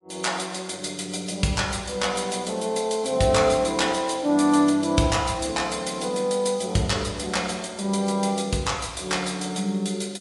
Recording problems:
lossy codec; MP3, log-spectral distance 4 dB, nothing above 11 kHz

